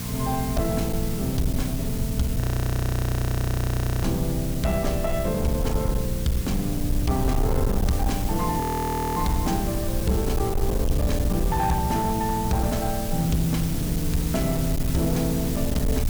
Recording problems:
distorted audio; hard clipping, uneven, signal-to-distortion ratio 11 dB
hum; 60 Hz, harmonics up to 720 Hz, SNR 7 dB
hiss; slope -1 dB per octave, SNR 8 dB
rumble; below 88 Hz, SNR 4 dB
audio freezing; at 2.5 s for 1.5 s and at 8.5 s for 0.5 s

